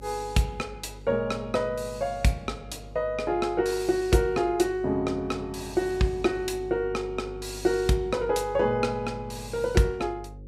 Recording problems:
hum; 50 Hz, harmonics up to 550 Hz, SNR 17 dB

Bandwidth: 15.5 kHz